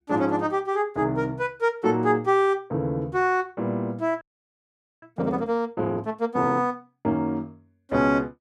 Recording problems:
frozen audio; at 4 s for 1 s

